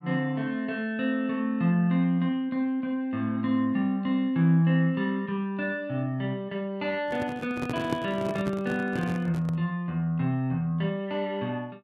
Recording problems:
microphone handling noise; from 7 to 9.5 s; peak +1 dB vs average level

